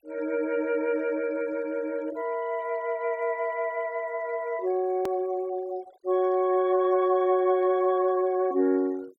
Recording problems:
denoising artefacts; signal-to-artefact ratio 26 dB
hard cut with a click; at 5 s

